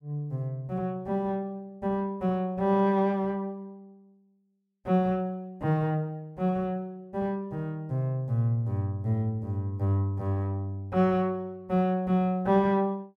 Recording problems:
none

